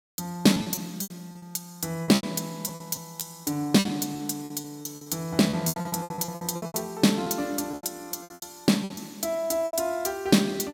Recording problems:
lost packets; 16% of the sound replaced, filled with repeated pitch periods

